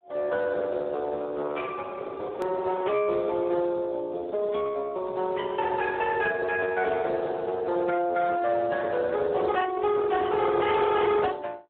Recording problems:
phone line; 300 Hz to 2.9 kHz, Speex
distortion; hard clipping, signal-to-distortion ratio 14 dB
click at an edit; at 2.5 s

